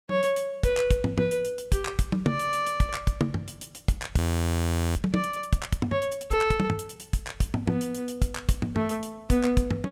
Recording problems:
frozen audio; at 4 s for 1 s

